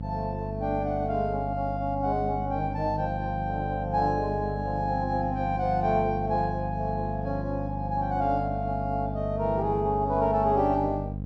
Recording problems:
electrical hum; 50 Hz, harmonics up to 550 Hz, SNR 6 dB

